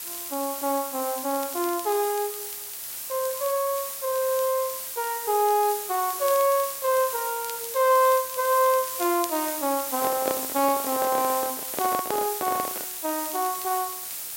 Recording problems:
background hiss; slope +1 dB per octave, SNR 5 dB
crackle; vinyl, SNR 21 dB
microphone handling noise; from 10 to 13 s; peak 0 dB vs average level

